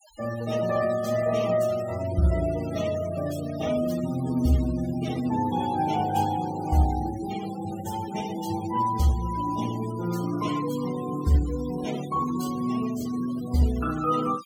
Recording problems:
noise reduction artefacts; signal-to-artefact ratio 15 dB

